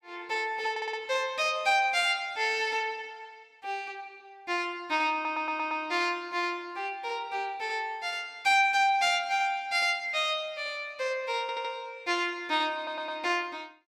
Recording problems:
stutter; 4 times, first at 0.5 s

